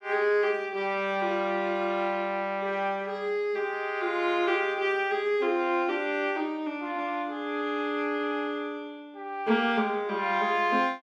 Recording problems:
none

